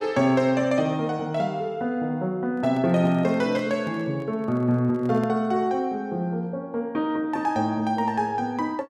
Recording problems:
microphone handling noise; from 2.5 to 5.5 s; peak -9 dB vs average level

